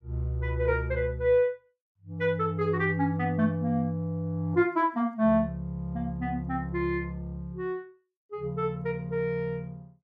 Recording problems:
none

